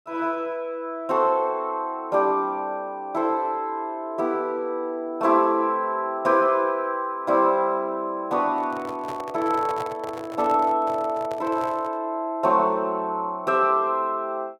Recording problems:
microphone handling noise; from 8.5 to 12 s; peak -7 dB vs average level

